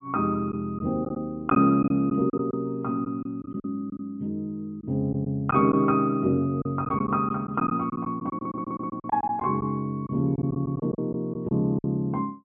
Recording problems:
treble cut off; nothing above 3.3 kHz
lost packets; 8% of the sound replaced, filled with silence
stutter; at 8.5 s

